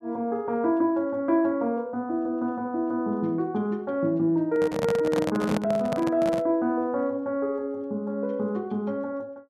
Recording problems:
handling noise; from 4.5 to 6.5 s; peak +1 dB vs average level

